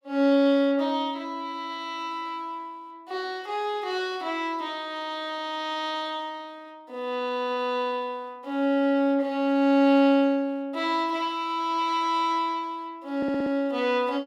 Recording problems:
audio stuttering; at 13 s

